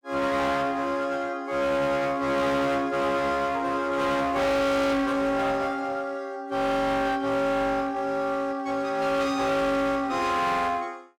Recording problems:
distorted audio; hard clipping, uneven, signal-to-distortion ratio 6 dB

